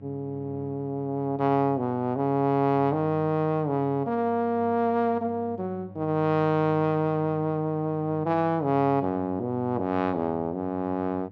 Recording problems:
hum; 50 Hz, harmonics up to 800 Hz, SNR 20 dB

